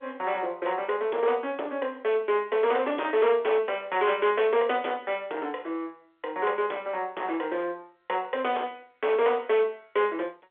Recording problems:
phone line; 320 Hz to 3.5 kHz, G.711
distorted audio; hard clipping, signal-to-distortion ratio 13 dB

